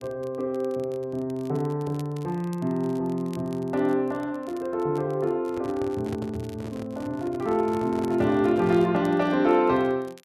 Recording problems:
crackle; vinyl, SNR 28 dB
microphone handling noise; from 5.5 to 9 s; peak -5 dB vs average level

